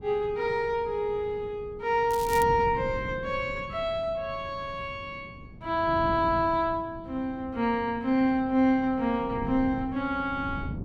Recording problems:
wind noise; below 230 Hz, SNR 14 dB
crackle; at 2 s; loose cable, SNR 14 dB

